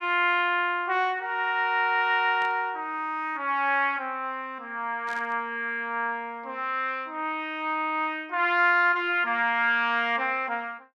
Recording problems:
burst of static; at 2.5 s and at 5 s; peak -14 dB vs average level

